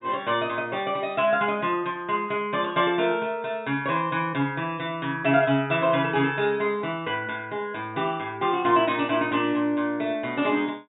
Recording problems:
treble missing; nothing above 4 kHz

